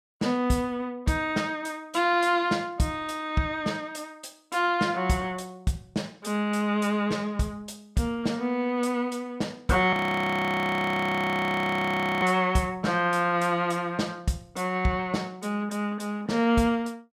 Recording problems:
audio freezing; at 10 s for 2.5 s

